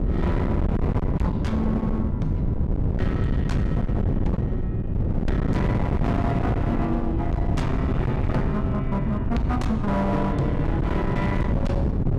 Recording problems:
distorted audio; hard clipping, signal-to-distortion ratio 8 dB
wind noise; below 220 Hz, SNR -2 dB

